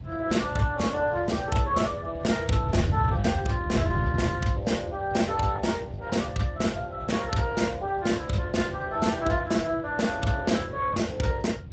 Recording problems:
lossy codec; Speex, log-spectral distance 3 dB, nothing above 7.8 kHz
wind on the microphone; below 140 Hz, SNR 7 dB
packet loss; 1.6% of the sound replaced, filled with the last packet

